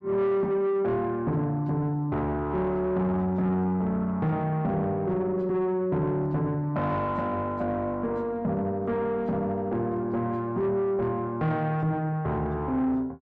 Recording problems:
distortion; soft clipping, signal-to-distortion ratio 11 dB

